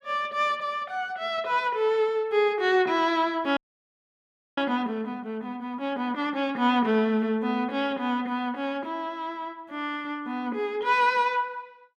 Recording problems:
audio freezing; at 3.5 s for 1 s

